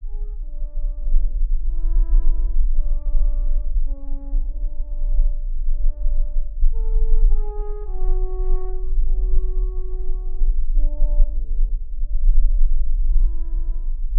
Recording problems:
treble cut off; nothing above 5 kHz
rumble; below 34 Hz, strongest tone 20 Hz, SNR -18 dB

